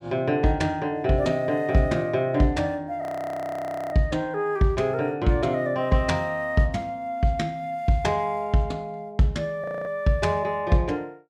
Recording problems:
audio freezing; at 3 s for 1 s and at 9.5 s

